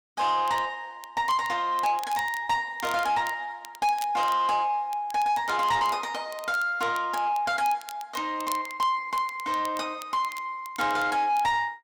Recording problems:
distortion; soft clipping, signal-to-distortion ratio 11 dB
crackle; vinyl, SNR 19 dB

